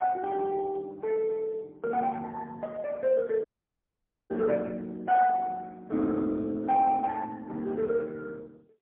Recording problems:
phone line; 240 Hz to 3.1 kHz, AMR-NB, then MP3
audio cutting out; at 3.5 s for 1 s

